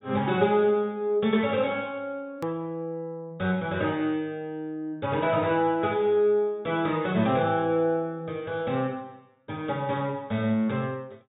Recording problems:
low-pass filter; nothing above 4 kHz
click at an edit; at 2.5 s

